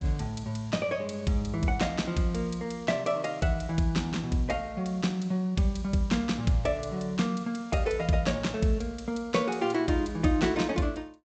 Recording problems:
treble cut off; nothing above 8 kHz

